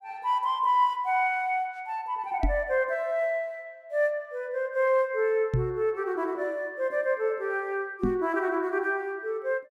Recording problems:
knock on the microphone; at 2.5 s, at 5.5 s and at 8 s; peak +4 dB vs average level

